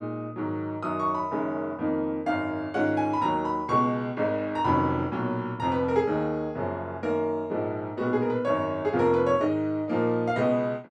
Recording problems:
none

